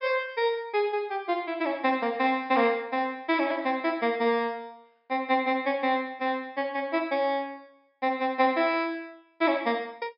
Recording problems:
treble cut off; nothing above 5.5 kHz

